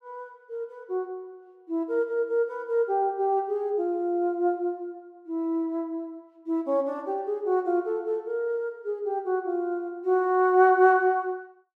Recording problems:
none

